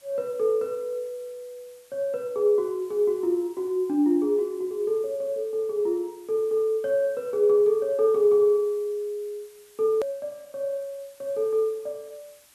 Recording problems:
background hiss; slope +1 dB per octave, SNR 29 dB
edit click; at 10 s

